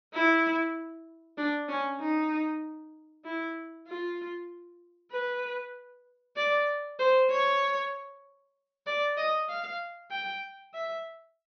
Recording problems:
treble cut off; nothing above 6.3 kHz

